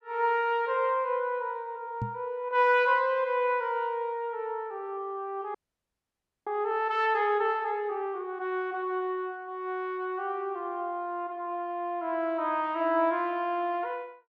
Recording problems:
knock on the microphone; at 2 s; peak 0 dB vs average level
frozen audio; at 5.5 s for 1 s

